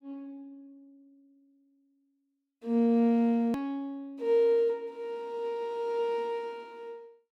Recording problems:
hard cut with a click; at 3.5 s

